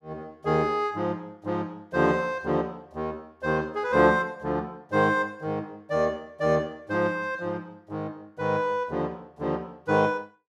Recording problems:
none

